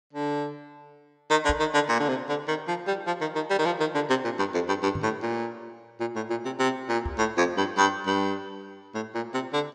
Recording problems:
microphone thump; at 1.5 s, at 5 s and at 7 s; peak -1 dB vs average level

